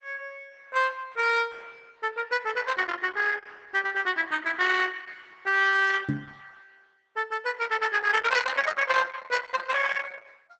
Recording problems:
lossy codec; Opus, log-spectral distance 6 dB, nothing above 8 kHz
microphone bump; at 6 s; peak +3 dB vs average level

